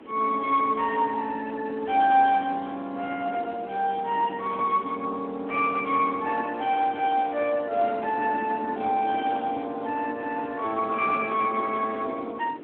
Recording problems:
phone line; 240 Hz to 3.3 kHz, Speex
background hiss; SNR 29 dB
wind on the microphone; below 470 Hz, SNR 15 dB

